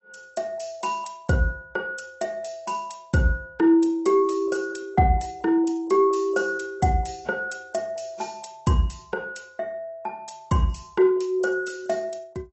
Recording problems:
codec artefacts; AAC, log-spectral distance 3 dB, nothing above 7.8 kHz

